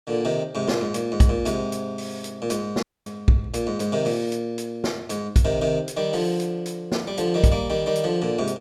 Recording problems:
audio cutting out; at 3 s

